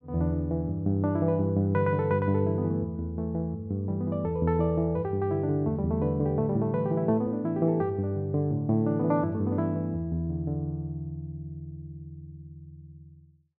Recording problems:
none

